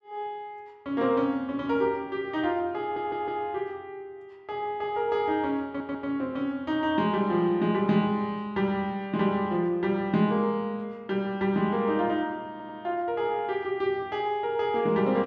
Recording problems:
stutter; at 3 s, at 5.5 s and at 13 s

